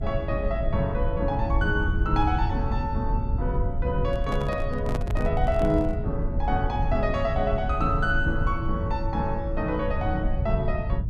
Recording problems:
hum; 50 Hz, harmonics up to 350 Hz, SNR 20 dB
low-frequency rumble; below 94 Hz, SNR 1 dB
microphone handling noise; from 4 to 6 s; peak -2 dB vs average level

